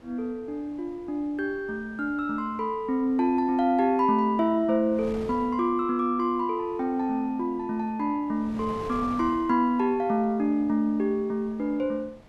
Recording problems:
wind on the microphone; below 740 Hz, SNR 22 dB

